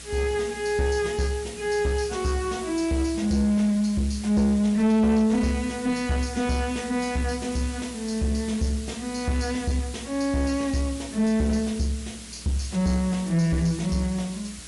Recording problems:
lossy codec; MP3, log-spectral distance 6 dB
distorted audio; soft clipping, signal-to-distortion ratio 11 dB
hum; 60 Hz, harmonics up to 720 Hz, SNR 23 dB
hiss; slope +1 dB per octave, SNR 15 dB

